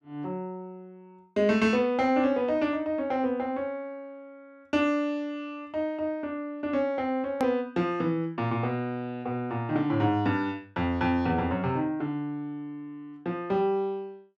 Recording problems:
edit click; at 7.5 s

